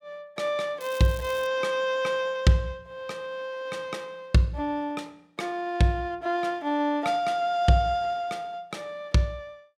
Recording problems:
crackle; at 1 s; loose cable, SNR 19 dB

